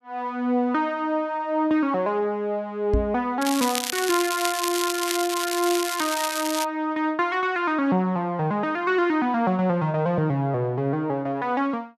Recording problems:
microphone bump; at 3 s; peak +3 dB vs average level
crackle; from 3.5 to 6.5 s; loose cable, SNR 4 dB

